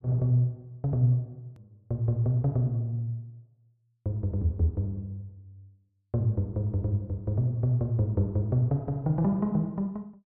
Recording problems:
click at an edit; at 1.5 s

